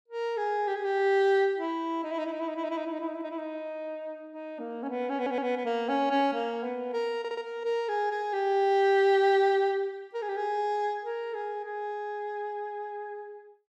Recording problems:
stutter; at 5 s and at 7 s

